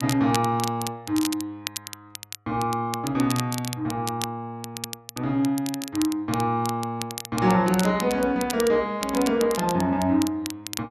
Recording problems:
crackling; vinyl, SNR 11 dB

